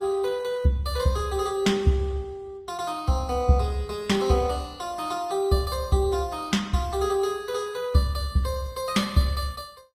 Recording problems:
lossy compression; Opus, log-spectral distance 3 dB, nothing above 15.1 kHz

